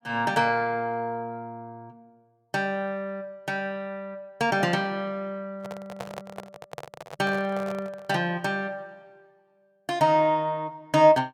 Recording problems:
microphone handling noise; from 5.5 to 8 s; peak -6 dB vs average level

